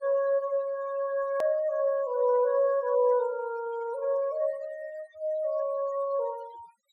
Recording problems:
noise reduction artefacts; signal-to-artefact ratio 22 dB
hard cut with a click; at 1.5 s

